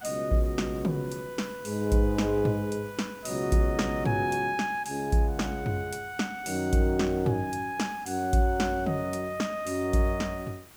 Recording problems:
background hiss; slope -2 dB per octave, SNR 23 dB

